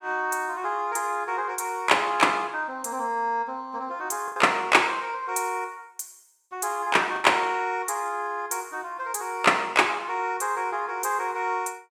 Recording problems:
packet loss; 1.4% of the sound replaced, filled with the last packet

